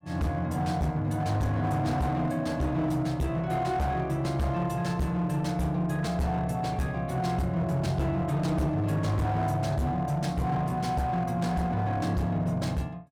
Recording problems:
distortion; hard clipping, uneven, signal-to-distortion ratio 10 dB

